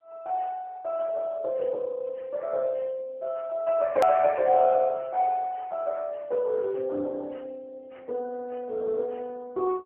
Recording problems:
telephone audio; 260 Hz to 3 kHz, AMR-NB
hard cut with a click; at 4 s

